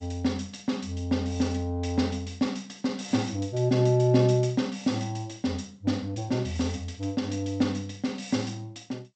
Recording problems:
codec artefacts; G.722, log-spectral distance 3 dB, nothing above 8.2 kHz

